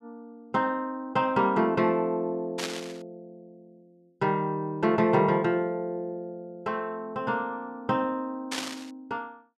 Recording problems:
burst of static; at 2.5 s and at 8.5 s; peak 0 dB vs average level

